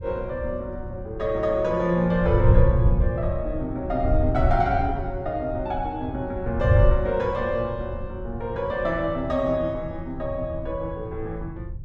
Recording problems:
wind noise; below 110 Hz, SNR 2 dB

